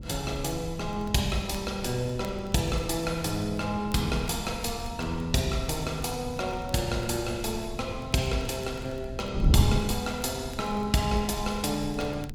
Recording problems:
wind noise; below 150 Hz, SNR 7 dB
crackle; vinyl, SNR 26 dB

